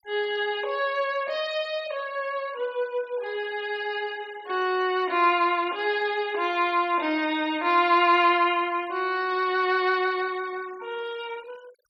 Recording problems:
noise reduction artefacts; signal-to-artefact ratio 23 dB

